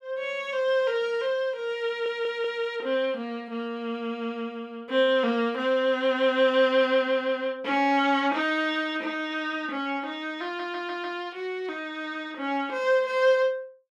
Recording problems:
audio stuttering; at 2 s and at 10 s

